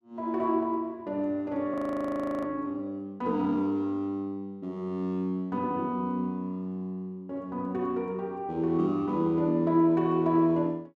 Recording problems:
frozen audio; at 1.5 s for 0.5 s

